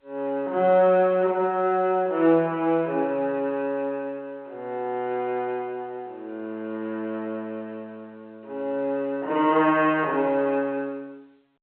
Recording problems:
telephone audio; 280 Hz to 3.1 kHz, G.711

